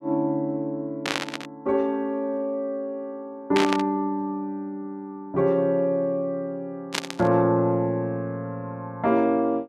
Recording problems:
static burst; at 1 s, at 3.5 s and at 7 s; peak +3 dB vs average level

